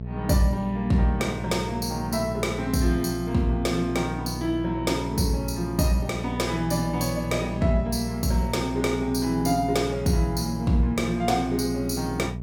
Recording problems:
hum; 60 Hz, harmonics up to 660 Hz, SNR 8 dB

